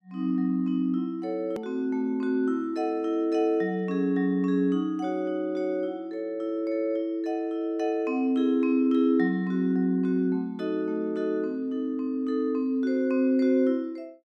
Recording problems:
click at an edit; at 1.5 s

